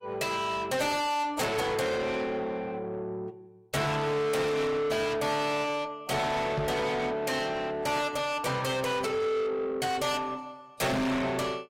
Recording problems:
codec artefacts; AAC, log-spectral distance 3 dB, nothing above 16.5 kHz
distortion; soft clipping, signal-to-distortion ratio 6 dB
microphone bump; at 6.5 s and at 11 s; peak +4 dB vs average level

